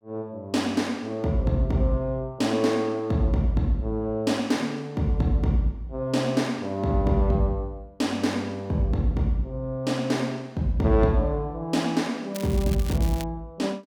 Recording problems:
crackle; at 12 s; loose cable, SNR 15 dB

